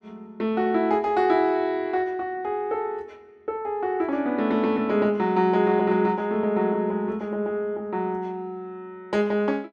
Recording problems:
none

